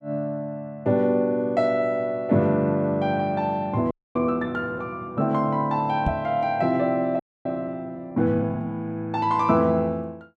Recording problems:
audio freezing; at 4 s and at 7 s
knock on the microphone; at 6 s; peak +2 dB vs average level

